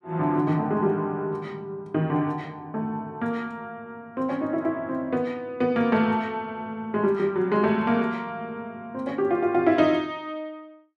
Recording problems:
none

